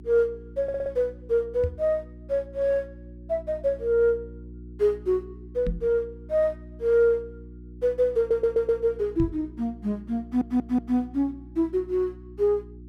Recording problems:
mains hum; 60 Hz, harmonics up to 360 Hz, SNR 18 dB
stutter; at 0.5 s, at 8 s and at 10 s
microphone thump; at 1.5 s, at 5.5 s and at 9 s; peak +1 dB vs average level

